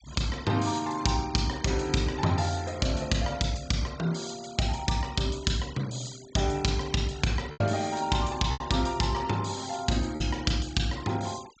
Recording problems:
low-pass filter; nothing above 8 kHz
denoising artefacts; signal-to-artefact ratio 19 dB
lost packets; 1.7% of the sound replaced, filled with repeated pitch periods

